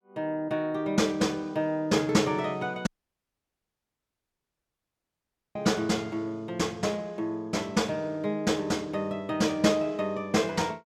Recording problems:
audio cutting out; at 3 s for 2.5 s

